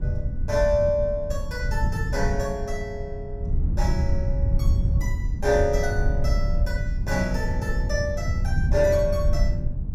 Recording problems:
low-frequency rumble; below 96 Hz, SNR 0 dB

